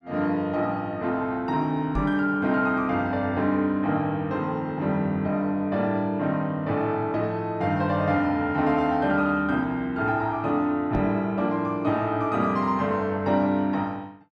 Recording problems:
knock on the microphone; at 2 s and at 11 s; peak -1 dB vs average level

